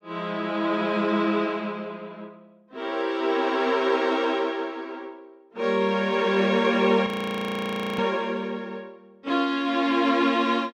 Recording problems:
frozen audio; at 7 s for 1 s

